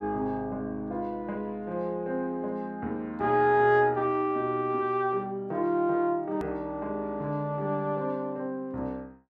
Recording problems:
edit click; at 6.5 s

